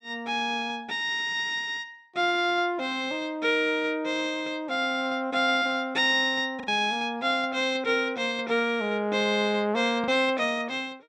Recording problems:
packet loss; 1.1% of the sound replaced, filled with the last packet

